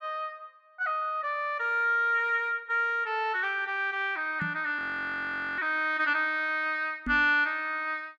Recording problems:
microphone thump; at 4.5 s and at 7 s; peak -4 dB vs average level
audio freezing; at 5 s for 1 s

